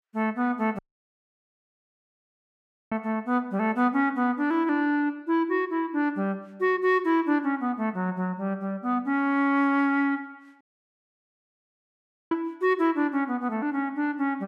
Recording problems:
dropout; at 1 s for 2 s and at 11 s for 1.5 s

